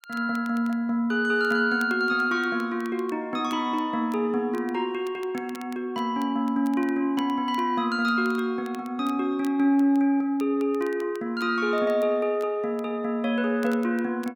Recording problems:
crackling; vinyl, SNR 26 dB

